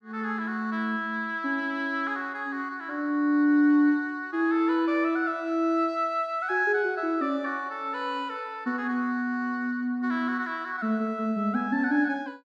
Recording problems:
none

